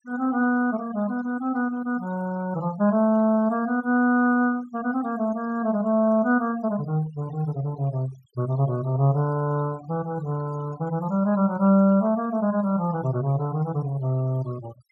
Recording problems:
denoising artefacts; signal-to-artefact ratio 21 dB

